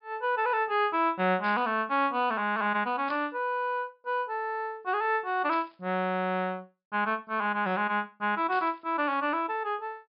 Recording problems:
treble missing; nothing above 5.2 kHz
burst of static; 4 times, first at 1.5 s; peak -12 dB vs average level

